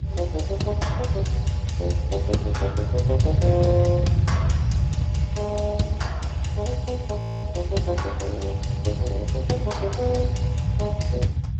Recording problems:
lossy codec; Speex, log-spectral distance 2 dB, nothing above 7.6 kHz
low-frequency rumble; below 130 Hz, SNR -3 dB
frozen audio; at 7 s

